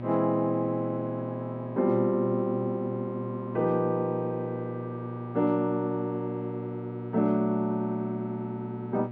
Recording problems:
electrical hum; 60 Hz, harmonics up to 1.3 kHz, SNR 8 dB

